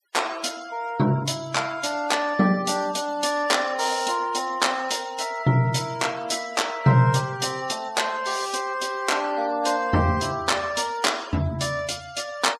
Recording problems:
noise reduction artefacts; signal-to-artefact ratio 19 dB

